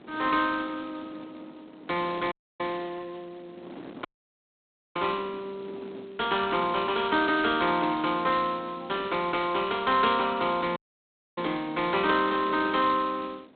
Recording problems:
telephone audio; 220 Hz to 3.9 kHz, G.726
wind noise; below 660 Hz, SNR 21 dB
dropout; at 2.5 s, at 4 s for 1 s and at 11 s for 0.5 s

